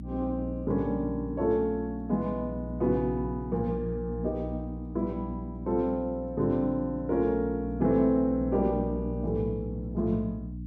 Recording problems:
hum; 60 Hz, harmonics up to 300 Hz, SNR 8 dB

